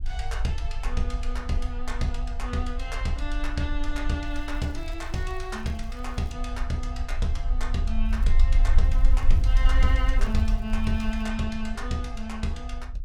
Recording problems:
low-frequency rumble; below 48 Hz, strongest tone 22 Hz, SNR -2 dB
crackle; from 4.5 to 6.5 s, at 8 s and from 9 to 11 s; loose cable, SNR 26 dB

